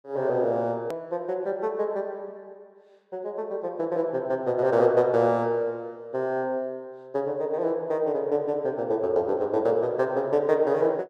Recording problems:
edit click; at 1 s

